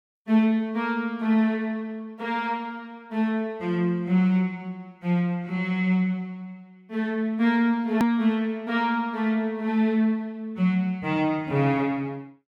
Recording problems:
edit click; at 8 s

